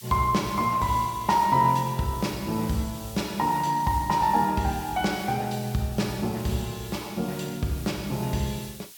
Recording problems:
hiss; slope +4 dB per octave, SNR 17 dB

